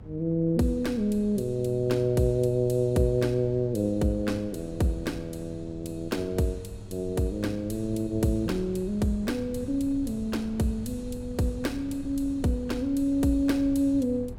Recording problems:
electrical hum; 50 Hz, harmonics up to 800 Hz, SNR 19 dB
wind on the microphone; below 140 Hz, SNR 17 dB

